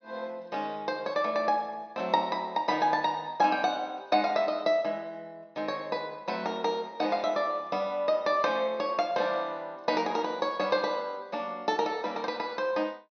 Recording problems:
treble missing; nothing above 6.2 kHz

